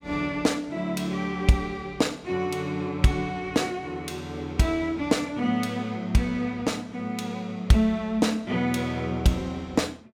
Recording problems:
none

